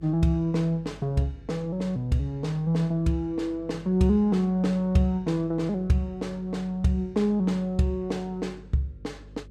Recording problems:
hum; 50 Hz, harmonics up to 550 Hz, SNR 22 dB

